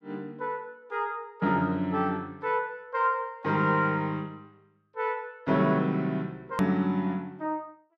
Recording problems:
hard cut with a click; at 6.5 s

